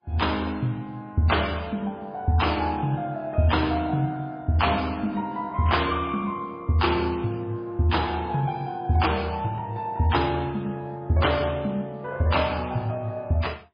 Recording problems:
lossy codec; MP2, then MP3, log-spectral distance 3 dB, nothing above 5 kHz

